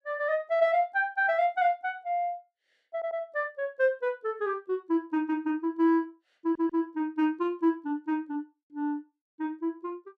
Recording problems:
stutter; at 3 s and at 6.5 s

